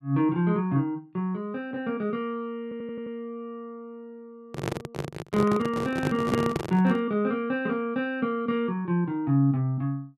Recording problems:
audio stuttering; at 2.5 s
microphone handling noise; from 4.5 to 7 s; peak +3 dB vs average level

